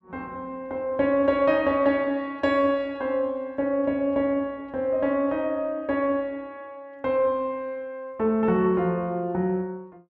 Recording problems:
none

